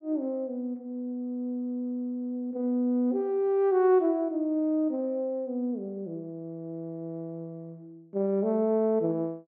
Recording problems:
none

